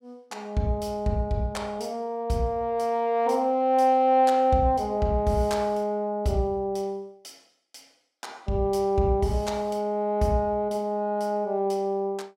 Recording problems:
none

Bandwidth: 16.5 kHz